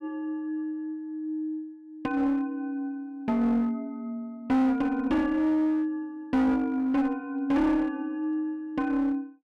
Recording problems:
distorted audio; hard clipping, uneven, signal-to-distortion ratio 9 dB

